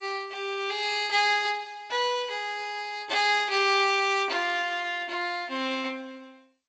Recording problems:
codec artefacts; G.722, log-spectral distance 3 dB, nothing above 7.6 kHz

